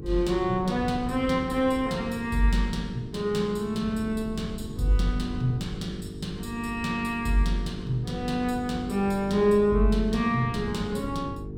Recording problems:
electrical hum; 50 Hz, harmonics up to 450 Hz, SNR 13 dB
wind on the microphone; below 150 Hz, SNR 15 dB

